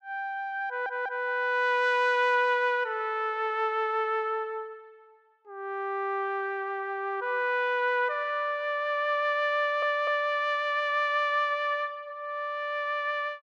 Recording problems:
stutter; at 0.5 s and at 9.5 s

